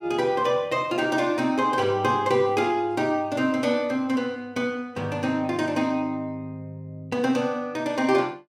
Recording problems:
none

